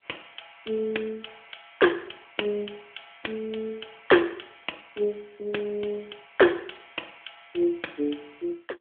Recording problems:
phone line; 300 Hz to 3.4 kHz, AMR-NB

